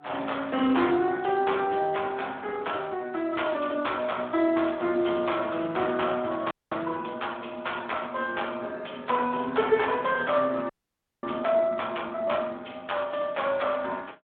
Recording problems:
telephone audio; 190 Hz to 3.5 kHz, Speex
frozen audio; at 6.5 s and at 11 s for 0.5 s

